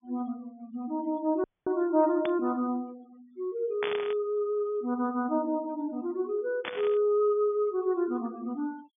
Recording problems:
treble cut off; nothing above 3.5 kHz
denoising artefacts; signal-to-artefact ratio 26 dB
dropout; at 1.5 s
burst of static; at 2.5 s, at 4 s and at 6.5 s; peak 0 dB vs average level

